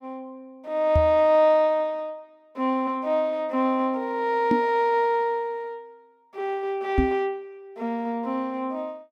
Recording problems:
microphone thump; at 1 s, at 4.5 s and at 7 s; peak +5 dB vs average level

